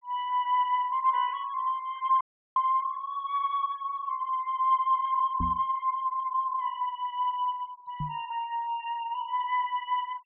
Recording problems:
treble cut off; nothing above 4 kHz
noise reduction artefacts; signal-to-artefact ratio 25 dB
audio cutting out; at 2 s
knock on the microphone; at 5.5 s and at 8 s; peak -1 dB vs average level

